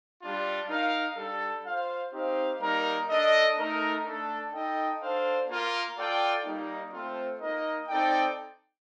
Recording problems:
none

